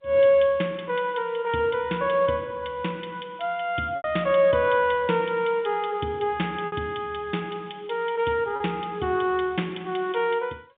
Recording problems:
telephone audio; 190 Hz to 3.7 kHz, G.711
packet loss; 1.7% of the sound replaced, filled with repeated pitch periods

